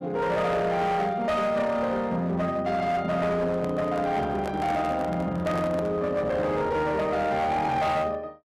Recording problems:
distorted audio; hard clipping, uneven, signal-to-distortion ratio 10 dB
handling noise; from 3.5 to 6 s; peak -4 dB vs average level

